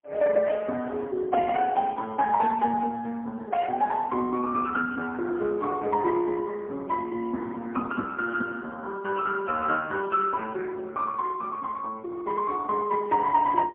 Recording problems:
phone line; 220 Hz to 2.8 kHz, AMR-NB, then MP3

